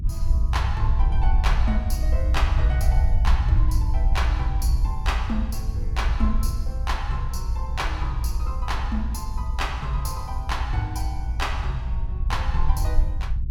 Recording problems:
low-frequency rumble; below 64 Hz, SNR -6 dB

